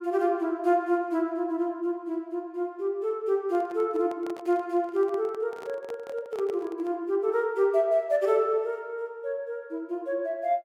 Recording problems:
microphone handling noise; from 3.5 to 7 s; peak -10 dB vs average level

